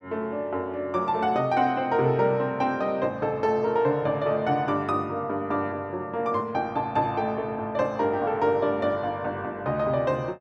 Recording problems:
none

